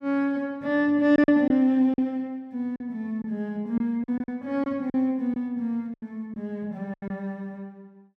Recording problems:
packet loss; 7% of the sound replaced, filled with silence

